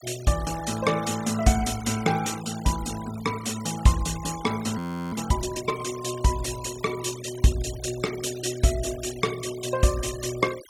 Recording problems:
noise reduction artefacts; signal-to-artefact ratio 13 dB
frozen audio; at 5 s

